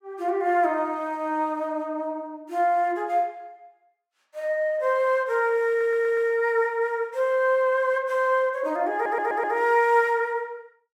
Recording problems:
stutter; at 5.5 s and at 9 s

